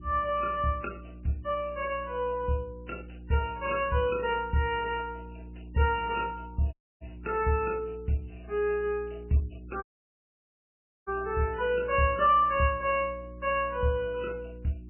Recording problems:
codec artefacts; MP3, log-spectral distance 3 dB, nothing above 2.5 kHz
mains hum; 60 Hz, harmonics up to 360 Hz, SNR 17 dB
dropout; at 6.5 s and at 10 s for 1 s

